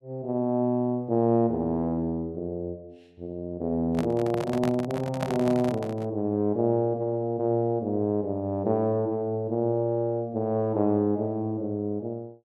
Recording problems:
handling noise; from 4 to 6 s; peak 0 dB vs average level

